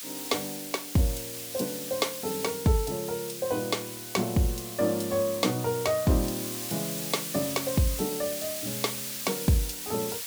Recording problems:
background hiss; slope +4 dB per octave, SNR 5 dB

